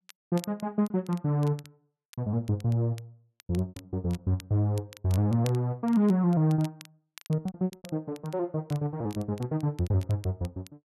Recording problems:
crackling; vinyl, SNR 23 dB
packet loss; 8% of the sound replaced, filled with repeated pitch periods

